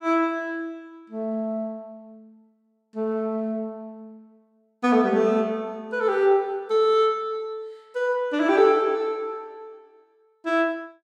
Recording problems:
none

